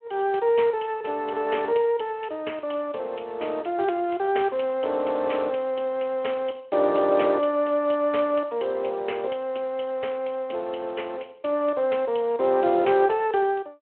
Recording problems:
telephone audio; 320 Hz to 3.2 kHz, Speex

